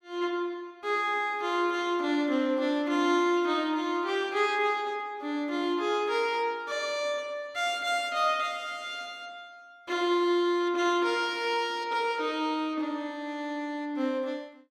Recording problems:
none

